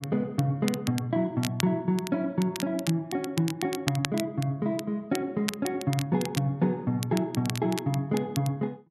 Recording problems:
crackle; vinyl, SNR 10 dB

